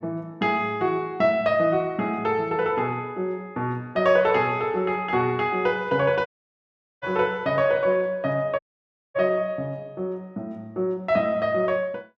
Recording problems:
dropout; at 6.5 s for 1 s and at 8.5 s for 0.5 s

